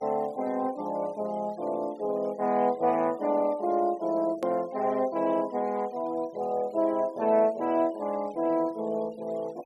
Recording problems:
noise reduction artefacts; signal-to-artefact ratio 25 dB
click at an edit; at 4.5 s

